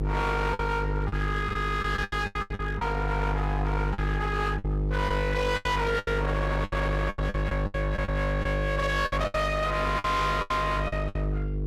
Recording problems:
distorted audio; hard clipping, uneven, signal-to-distortion ratio 6 dB
mains hum; 50 Hz, harmonics up to 1.6 kHz, SNR 2 dB
packet loss; 13% of the sound replaced, filled with the last packet

